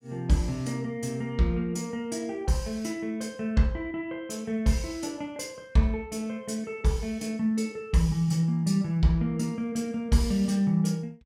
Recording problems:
none

